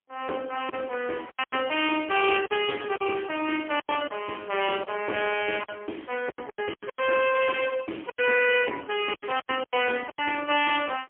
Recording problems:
phone line; 280 Hz to 3.2 kHz, AMR-NB, then MP3
lost packets; 10% of the sound replaced, filled with silence
crackling; from 3 to 4.5 s; loose cable, SNR 27 dB

